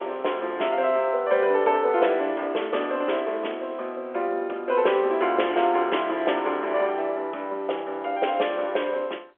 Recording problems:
phone line; 320 Hz to 3.4 kHz, G.711

